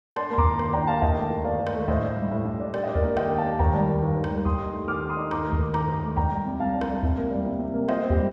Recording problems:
none

